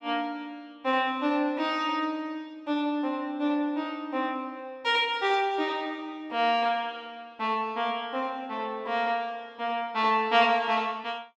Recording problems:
none

